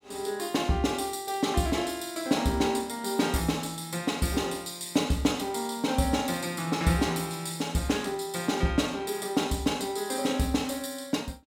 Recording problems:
none

